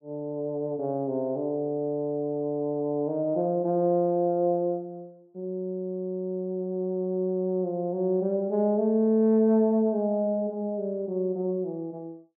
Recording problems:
none

